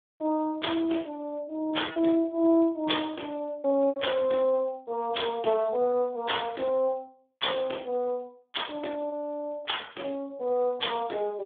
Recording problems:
telephone audio; 260 Hz to 3.6 kHz, Speex
lost packets; 1.9% of the sound replaced, filled with repeated pitch periods

